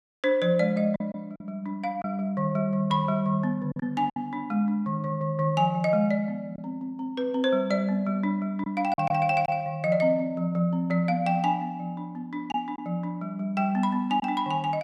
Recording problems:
packet loss; 3% of the sound replaced, filled with silence

